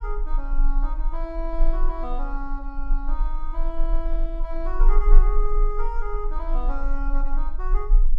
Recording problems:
low-frequency rumble; below 32 Hz, strongest tone 22 Hz, SNR -7 dB

